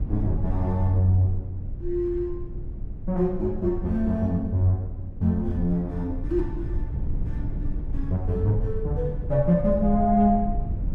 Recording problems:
rumble; below 88 Hz, SNR 8 dB

